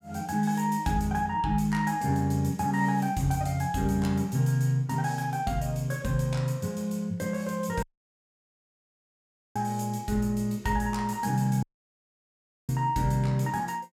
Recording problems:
dropout; at 8 s for 1.5 s and at 12 s for 1 s

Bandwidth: 16 kHz